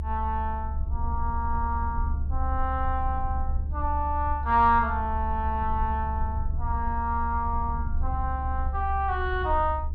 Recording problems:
low-frequency rumble; below 70 Hz, SNR 3 dB

